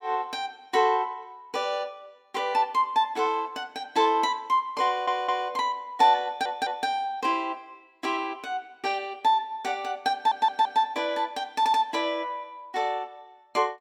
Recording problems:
stutter; 4 times, first at 5 s

